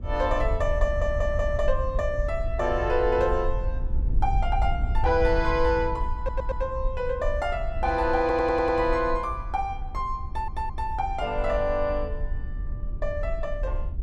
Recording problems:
wind noise; below 62 Hz, SNR 5 dB
audio stuttering; 4 times, first at 1 s

